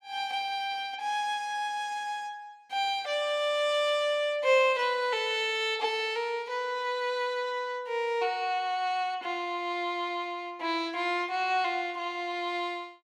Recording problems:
none

